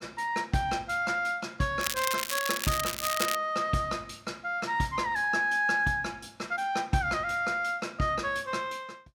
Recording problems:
crackle; from 2 to 3.5 s; loose cable, SNR 3 dB

